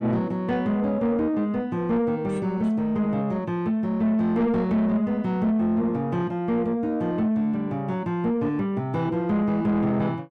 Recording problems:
distortion; soft clipping, signal-to-distortion ratio 12 dB

